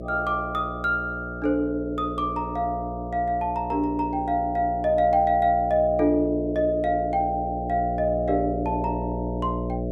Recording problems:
hum; 60 Hz, harmonics up to 660 Hz, SNR 8 dB

